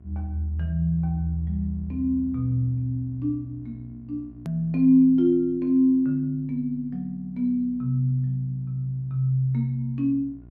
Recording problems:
hum; 60 Hz, harmonics up to 660 Hz, SNR 24 dB
hard cut with a click; at 4.5 s

